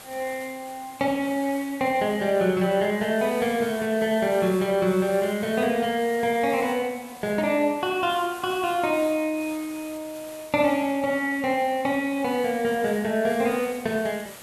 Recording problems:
background hiss; slope -2 dB per octave, SNR 18 dB

